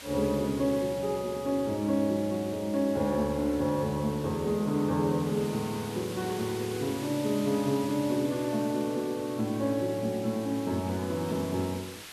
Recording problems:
hiss; slope 0 dB per octave, SNR 15 dB

